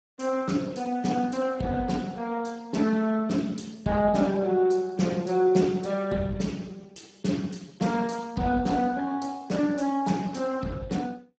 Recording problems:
codec artefacts; Speex, log-spectral distance 4 dB, nothing above 7.6 kHz

